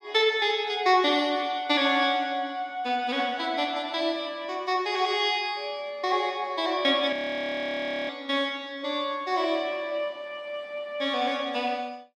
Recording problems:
audio freezing; at 7 s for 1 s

